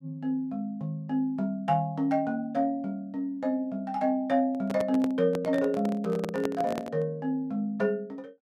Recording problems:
handling noise; from 4.5 to 7 s; peak -1 dB vs average level

